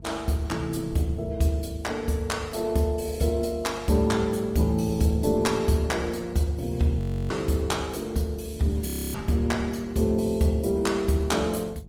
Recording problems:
lossy codec; Opus, log-spectral distance 3 dB, nothing above 17 kHz
mains hum; 50 Hz, harmonics up to 450 Hz, SNR 20 dB
wind noise; below 230 Hz, SNR 19 dB
frozen audio; at 7 s and at 9 s

